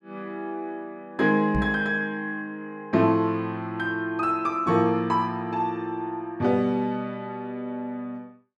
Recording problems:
microphone thump; at 1.5 s; peak +3 dB vs average level

